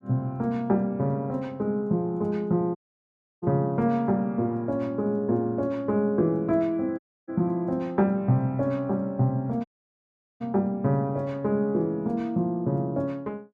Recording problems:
dropout; at 3 s for 0.5 s, at 7 s and at 9.5 s for 1 s

